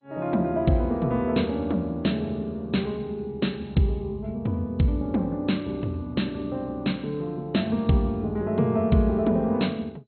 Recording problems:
codec artefacts; MP2, log-spectral distance 2 dB, nothing above 4.2 kHz

